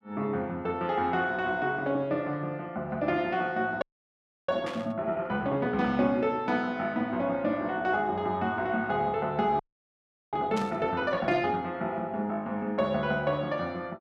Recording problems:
frozen audio; at 4 s for 0.5 s and at 9.5 s for 0.5 s
burst of static; at 4.5 s and at 11 s; peak -7 dB vs average level

